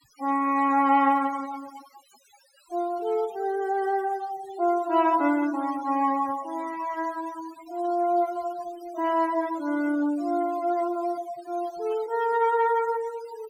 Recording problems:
denoising artefacts; signal-to-artefact ratio 19 dB

